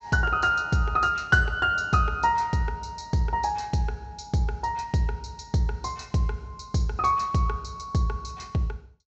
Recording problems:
treble cut off; nothing above 7.9 kHz

